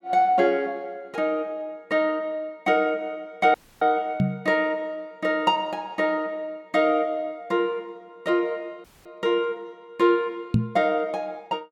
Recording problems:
audio cutting out; at 3.5 s and at 9 s
knock on the microphone; at 4 s and at 11 s; peak +7 dB vs average level

